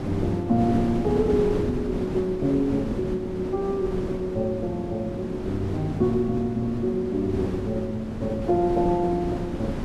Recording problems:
wind on the microphone; below 390 Hz, SNR 6 dB

